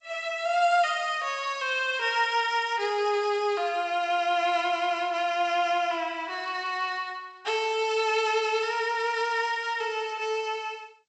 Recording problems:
codec artefacts; G.722, log-spectral distance 2 dB, nothing above 7.8 kHz

